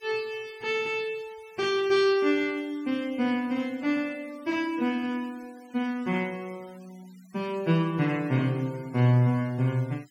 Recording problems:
noise reduction artefacts; signal-to-artefact ratio 25 dB

